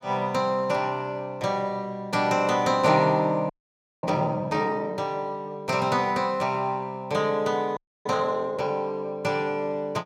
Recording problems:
frozen audio; at 3.5 s for 0.5 s and at 8 s

